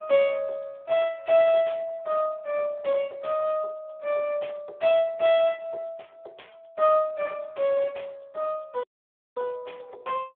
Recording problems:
telephone audio; 370 Hz to 3.7 kHz, Speex
audio cutting out; at 9 s for 0.5 s

